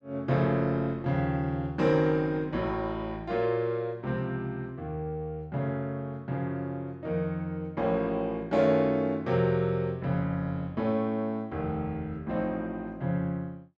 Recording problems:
none

